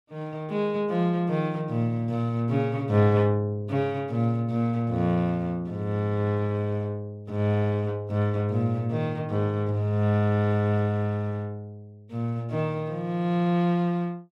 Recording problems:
none

